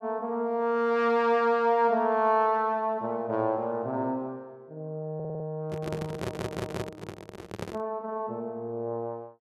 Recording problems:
stutter; at 5 s and at 6 s
handling noise; from 5.5 to 8 s; peak -1 dB vs average level

